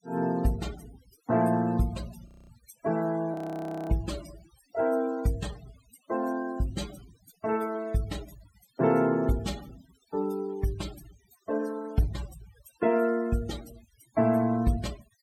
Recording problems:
denoising artefacts; signal-to-artefact ratio 19 dB
audio freezing; at 2.5 s and at 3.5 s for 0.5 s

